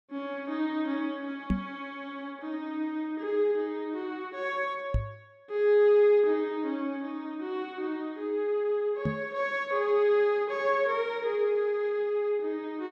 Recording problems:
knock on the microphone; at 1.5 s, at 5 s and at 9 s; peak +5 dB vs average level

